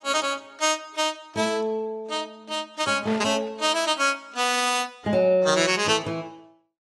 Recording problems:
lossy codec; AAC, log-spectral distance 3 dB, nothing above 11.3 kHz
burst of static; at 3 s and at 5.5 s; peak -8 dB vs average level

